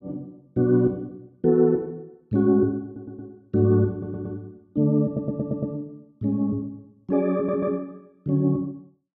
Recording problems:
audio stuttering; 4 times, first at 3 s

